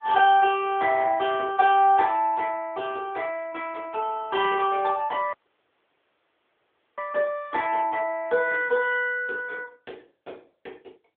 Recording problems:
phone line; 280 Hz to 3.5 kHz, AMR-NB
audio cutting out; at 5.5 s for 1.5 s

